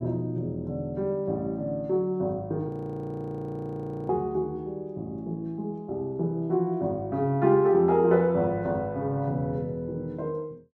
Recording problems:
audio freezing; at 2.5 s for 1.5 s

